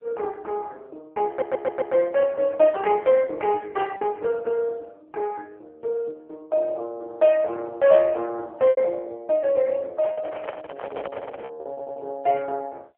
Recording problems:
phone line; 340 Hz to 2.8 kHz, AMR-NB
lost packets; 3% of the sound replaced, filled with repeated pitch periods
audio stuttering; at 1.5 s and at 12 s
microphone handling noise; from 10 to 11 s; peak -4 dB vs average level

